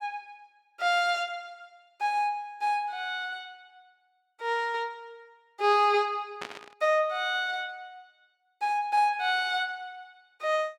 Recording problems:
burst of static; at 6.5 s; peak -5 dB vs average level

